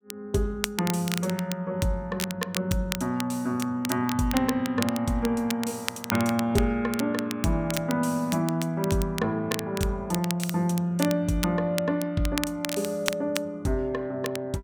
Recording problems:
crackle; vinyl, SNR 9 dB

